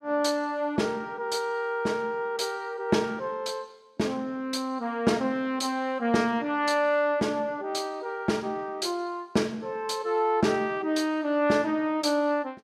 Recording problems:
none

